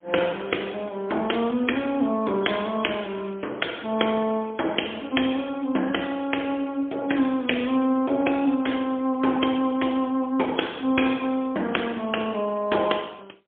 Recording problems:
telephone audio; 240 Hz to 3.4 kHz, AMR-NB, then MP3

